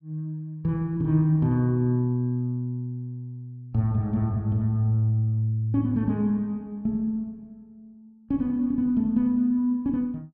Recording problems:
none

